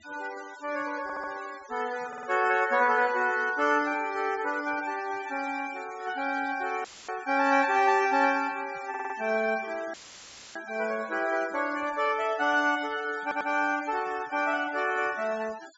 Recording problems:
treble cut off; nothing above 8 kHz
denoising artefacts; signal-to-artefact ratio 19 dB
audio stuttering; 4 times, first at 1 s
audio cutting out; at 7 s and at 10 s for 0.5 s; filled with static

